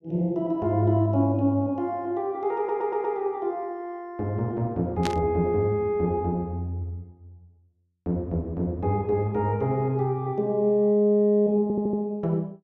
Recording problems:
audio stuttering; at 2.5 s and at 12 s
burst of static; at 5 s; peak -2 dB vs average level

